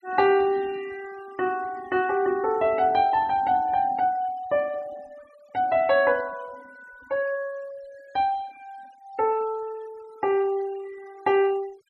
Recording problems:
noise reduction artefacts; signal-to-artefact ratio 24 dB

